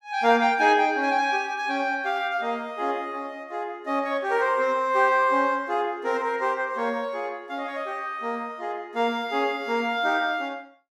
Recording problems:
none

